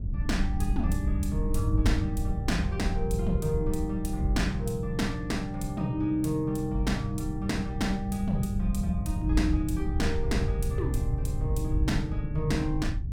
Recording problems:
wind on the microphone; below 96 Hz, SNR 2 dB

